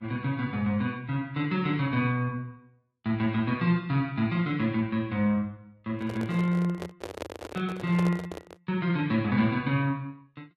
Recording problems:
lossy compression; Vorbis, log-spectral distance 2 dB
microphone handling noise; from 6 to 8.5 s; peak -3 dB vs average level

